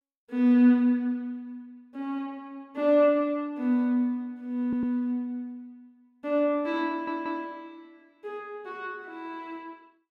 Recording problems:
audio stuttering; at 4.5 s and at 7 s

